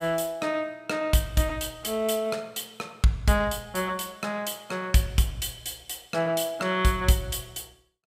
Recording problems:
none

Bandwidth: 15.5 kHz